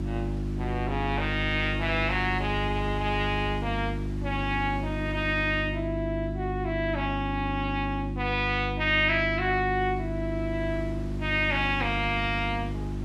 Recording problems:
hum; 50 Hz, harmonics up to 350 Hz, SNR 4 dB
wind noise; below 1.2 kHz, SNR 19 dB

